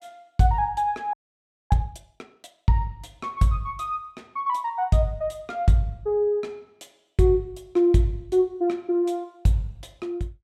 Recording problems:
audio freezing; at 1 s for 0.5 s

